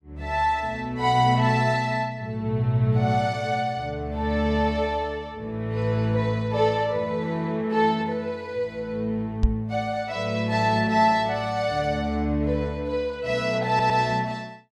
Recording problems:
microphone thump; at 9.5 s; peak +7 dB vs average level
audio stuttering; at 14 s

